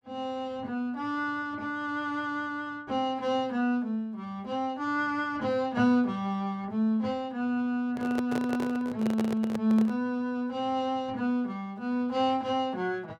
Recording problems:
handling noise; from 8 to 10 s; peak -1 dB vs average level

